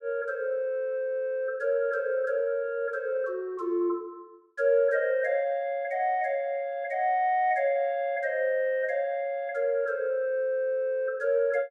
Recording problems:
none

